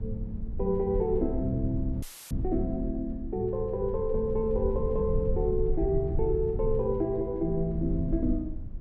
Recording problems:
rumble; below 78 Hz, SNR 6 dB
audio cutting out; at 2 s; filled with static

